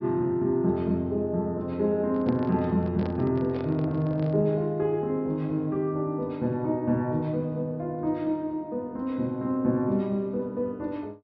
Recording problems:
low-pass filter; nothing above 5.5 kHz
handling noise; from 2 to 4.5 s; peak -5 dB vs average level

